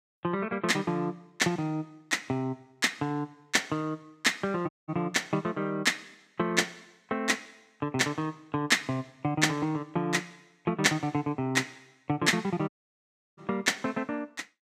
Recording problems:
dropout; at 4.5 s and at 13 s for 0.5 s

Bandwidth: 15.5 kHz